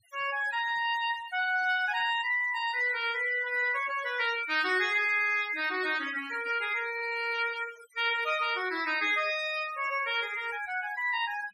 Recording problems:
noise reduction artefacts; signal-to-artefact ratio 17 dB

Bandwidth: 14.5 kHz